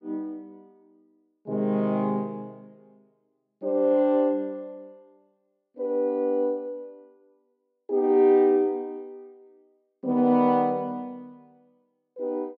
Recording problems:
none

